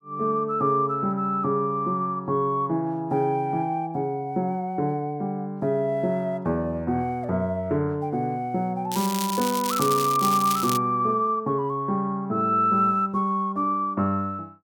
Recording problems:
crackling; from 9 to 11 s; loose cable, SNR 7 dB

